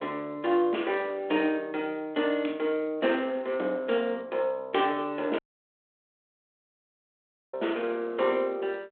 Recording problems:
phone line; 220 Hz to 3.5 kHz, G.726
audio cutting out; at 5.5 s for 2 s

